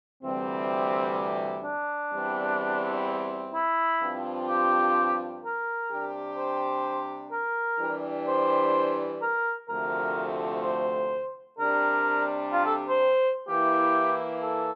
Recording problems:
none

